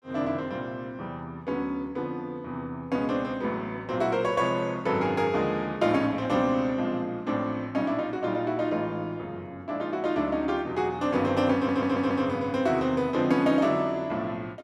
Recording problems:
audio stuttering; at 12 s

